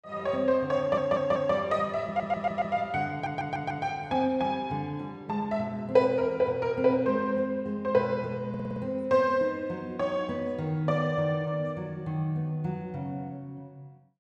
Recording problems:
audio stuttering; 4 times, first at 1 s

